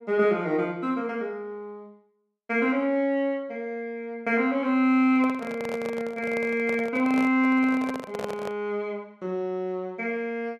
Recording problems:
handling noise; from 5 to 8.5 s; peak -3 dB vs average level

